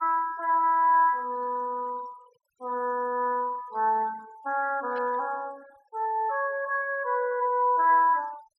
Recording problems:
denoising artefacts; signal-to-artefact ratio 26 dB
burst of static; at 5 s; peak -19 dB vs average level

